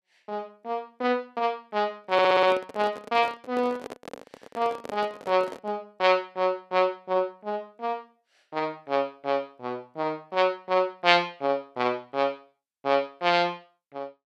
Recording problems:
microphone handling noise; from 2 to 5.5 s; peak -6 dB vs average level
audio stuttering; at 2 s

